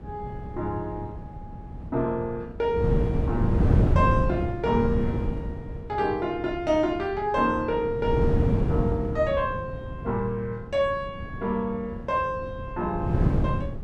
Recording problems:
wind on the microphone; below 200 Hz, SNR 0 dB

